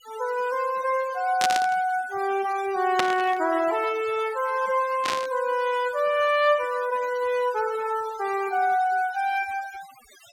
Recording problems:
denoising artefacts; signal-to-artefact ratio 18 dB
static burst; at 1.5 s, at 3 s and at 5 s; peak +3 dB vs average level

